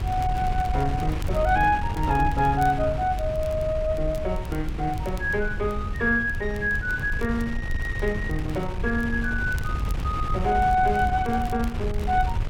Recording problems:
wind on the microphone; below 110 Hz, SNR 5 dB
crackling; vinyl, SNR 26 dB

